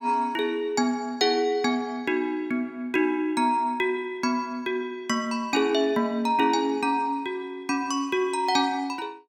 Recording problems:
none

